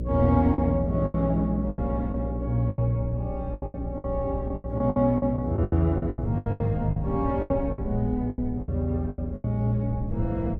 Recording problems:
hum; 60 Hz, harmonics up to 600 Hz, SNR 7 dB
rumble; below 120 Hz, SNR 14 dB
packet loss; 15% of the sound replaced, filled with the last packet

